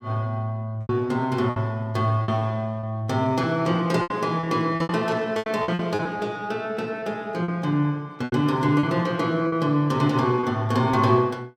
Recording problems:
lost packets; 9% of the sound replaced, filled with repeated pitch periods
burst of static; at 5 s; peak -13 dB vs average level

